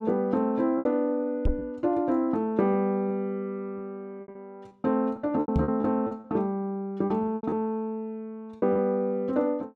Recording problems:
lost packets; 8% of the sound replaced, filled with repeated pitch periods
microphone bump; at 1.5 s and at 5.5 s; peak +5 dB vs average level

